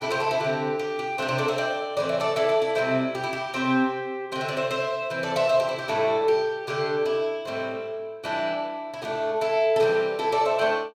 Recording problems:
none

